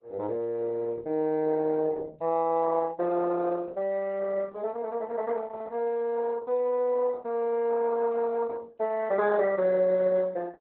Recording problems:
lossy codec; Opus, log-spectral distance 2 dB, nothing above 4 kHz

